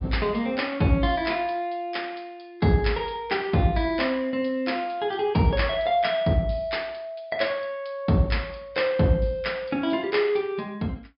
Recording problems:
low-pass filter; nothing above 5.5 kHz

